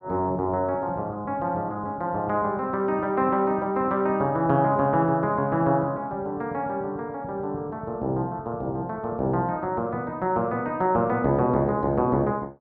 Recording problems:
none

